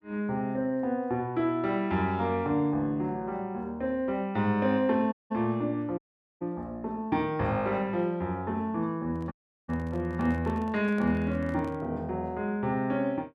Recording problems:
dropout; at 5 s, at 6 s and at 9.5 s
microphone handling noise; from 9 to 12 s; peak -12 dB vs average level

